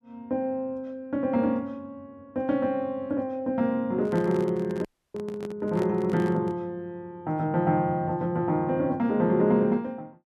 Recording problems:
microphone handling noise; from 4 to 6.5 s; peak -5 dB vs average level
audio cutting out; at 5 s

